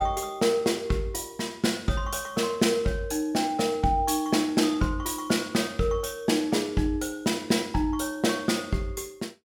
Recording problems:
none

